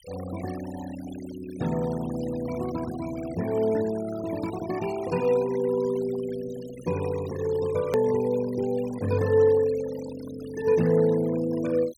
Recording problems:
noise reduction artefacts; signal-to-artefact ratio 17 dB
edit click; at 8 s

